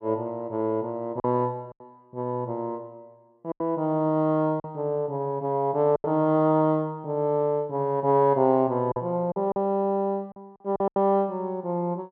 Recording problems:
lost packets; 5% of the sound replaced, filled with silence

